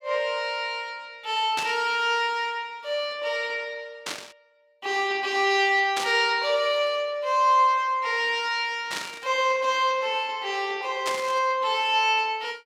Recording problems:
burst of static; 5 times, first at 1.5 s; peak -1 dB vs average level

